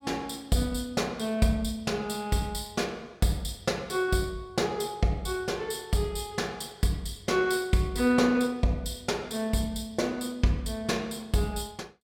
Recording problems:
none

